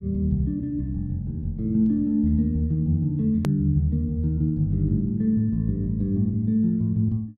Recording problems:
click at an edit; at 3.5 s

